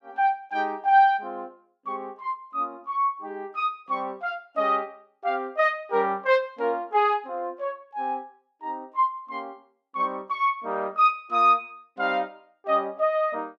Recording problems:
none

